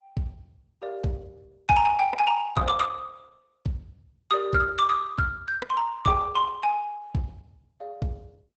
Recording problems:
codec artefacts; Opus, log-spectral distance 3 dB, nothing above 7.8 kHz

